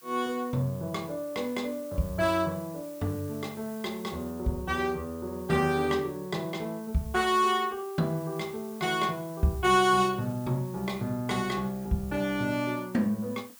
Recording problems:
hiss; SNR 21 dB

